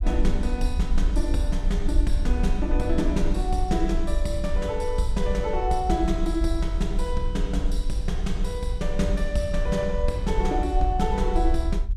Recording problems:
low-frequency rumble; below 50 Hz, SNR 1 dB

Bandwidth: 15 kHz